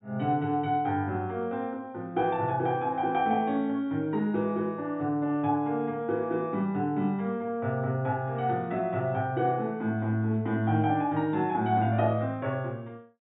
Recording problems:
treble missing; nothing above 4 kHz

